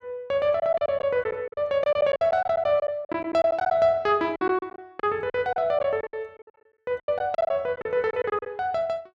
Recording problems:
packet loss; 14% of the sound replaced, filled with silence

